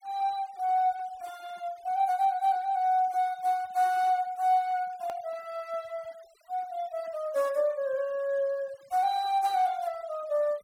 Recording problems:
denoising artefacts; signal-to-artefact ratio 26 dB
hard cut with a click; at 5 s

